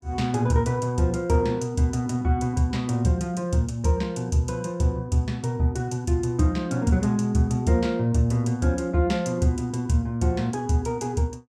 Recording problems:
none

